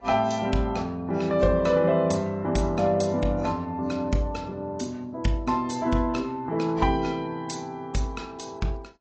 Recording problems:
lossy codec; AAC, log-spectral distance 3 dB, nothing above 8 kHz

